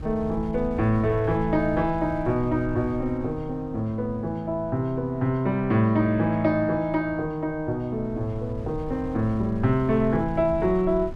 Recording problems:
wind noise; below 100 Hz, SNR 15 dB

